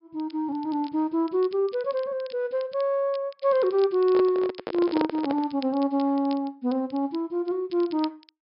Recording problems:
treble missing; nothing above 5.5 kHz
crackling; vinyl, SNR 24 dB
handling noise; from 4 to 5.5 s; peak +2 dB vs average level

